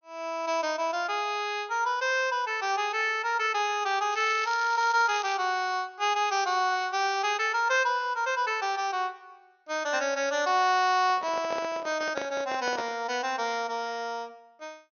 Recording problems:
low-pass filter; nothing above 6.4 kHz
crackling; from 4 to 5.5 s; loose cable, SNR 16 dB
microphone handling noise; from 11 to 13 s; peak -3 dB vs average level

